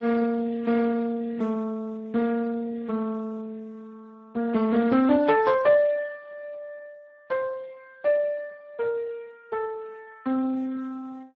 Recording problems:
lossy codec; MP3, then Speex, log-spectral distance 2 dB

